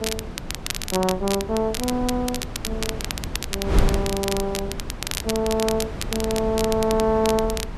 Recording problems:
wind on the microphone; below 230 Hz, SNR 7 dB
crackle; vinyl, SNR 6 dB

